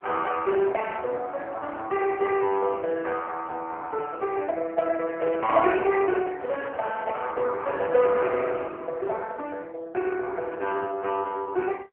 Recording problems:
phone line; 340 Hz to 3.1 kHz, AMR-NB
microphone handling noise; from 5 to 7.5 s; peak -3 dB vs average level

